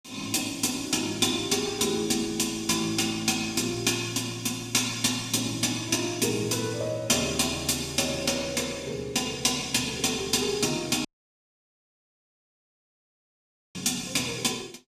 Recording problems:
audio cutting out; at 11 s for 2.5 s

